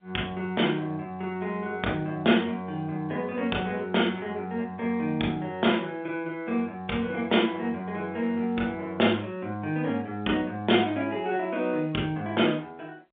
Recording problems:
telephone audio; 220 Hz to 3.7 kHz, G.711

